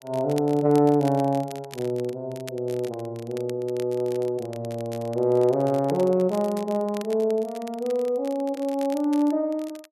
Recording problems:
crackling; vinyl, SNR 21 dB

